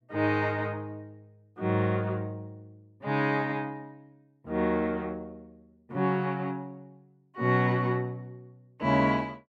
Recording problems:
none

